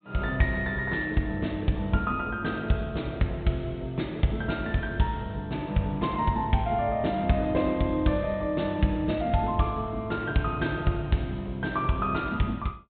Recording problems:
low-pass filter; nothing above 4 kHz

